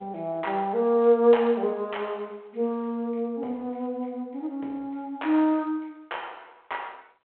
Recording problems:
telephone audio; 280 Hz to 3.9 kHz, G.726

